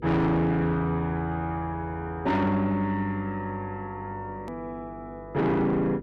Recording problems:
distortion; soft clipping, signal-to-distortion ratio 8 dB
electrical hum; 50 Hz, harmonics up to 500 Hz, SNR 20 dB
hard cut with a click; at 4.5 s

